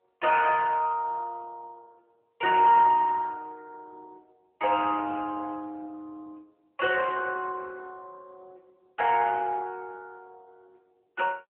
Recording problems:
phone line; 320 Hz to 3.1 kHz, AMR-NB

